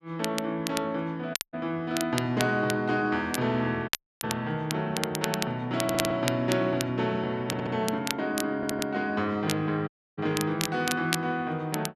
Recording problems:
crackle; vinyl, SNR 7 dB
dropout; at 1.5 s, at 4 s and at 10 s
audio stuttering; at 6 s, at 7.5 s and at 8.5 s

